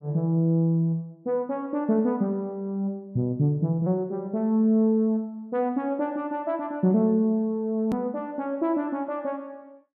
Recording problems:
hard cut with a click; at 8 s

